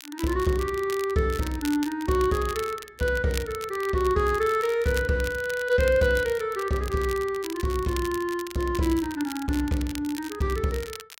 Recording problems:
crackling; vinyl, SNR 15 dB

